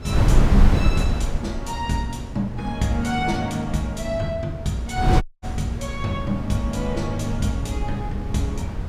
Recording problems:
rumble; below 110 Hz, SNR 13 dB
wind noise; below 140 Hz, SNR 0 dB
dropout; at 5 s

